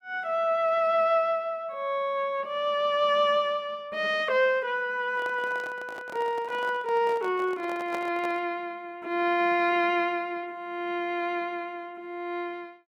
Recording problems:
microphone handling noise; from 5 to 8.5 s; peak -6 dB vs average level

